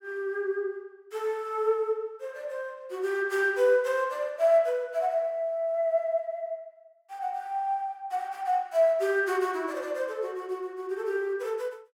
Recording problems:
none

